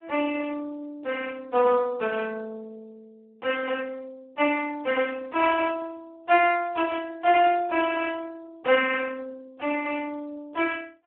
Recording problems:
telephone audio; 320 Hz to 2.8 kHz, Speex

